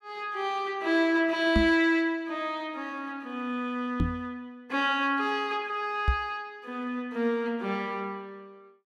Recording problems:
microphone thump; at 1.5 s, at 4 s and at 6 s; peak +6 dB vs average level

